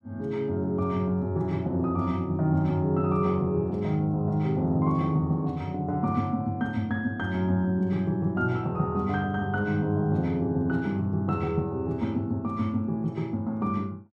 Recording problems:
none

